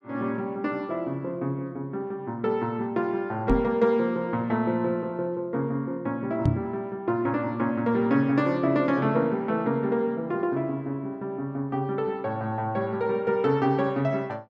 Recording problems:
microphone bump; at 3.5 s and at 6.5 s; peak +7 dB vs average level

